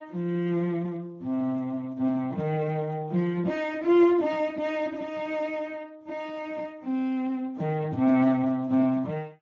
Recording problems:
lossy codec; AAC, then Speex, log-spectral distance 2 dB

